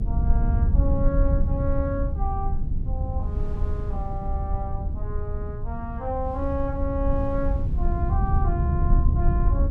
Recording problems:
rumble; below 84 Hz, SNR -6 dB
wind on the microphone; below 500 Hz, SNR 19 dB

